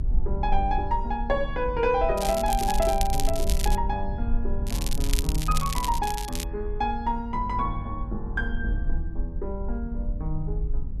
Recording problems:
rumble; below 50 Hz, strongest tone 18 Hz, SNR 3 dB
crackling; from 2 to 4 s and from 4.5 to 6.5 s; loose cable, SNR 6 dB

